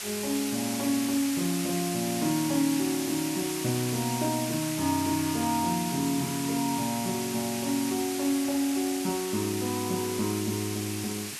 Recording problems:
background hiss; slope +2 dB per octave, SNR 5 dB

